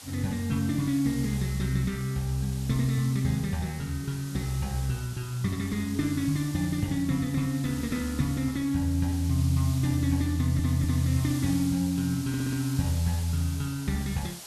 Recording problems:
background hiss; slope 0 dB per octave, SNR 14 dB
stutter; at 10 s and at 12 s

